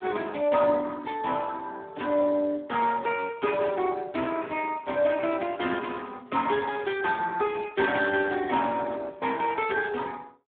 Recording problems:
phone line; 190 Hz to 2.8 kHz, Speex

